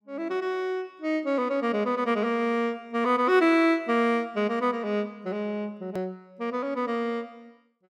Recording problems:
edit click; at 6 s

